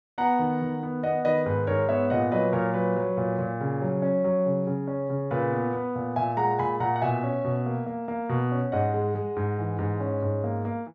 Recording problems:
none

